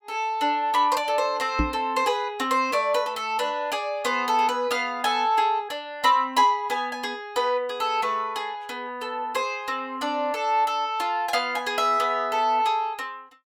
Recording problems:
microphone bump; at 1.5 s; peak +3 dB vs average level

